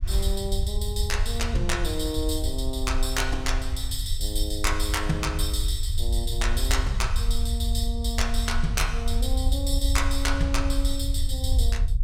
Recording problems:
low-frequency rumble; below 66 Hz, SNR -1 dB

